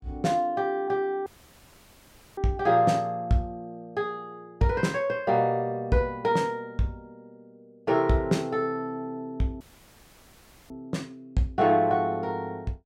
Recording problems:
dropout; at 1.5 s for 1 s and at 9.5 s for 1 s

